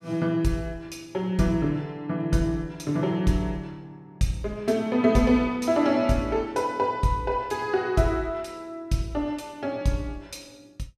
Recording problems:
none

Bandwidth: 14.5 kHz